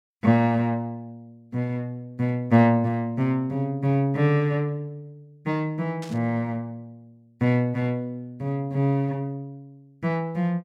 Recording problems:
burst of static; at 6 s; peak -12 dB vs average level

